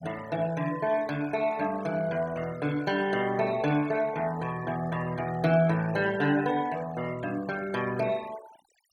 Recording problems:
denoising artefacts; signal-to-artefact ratio 17 dB

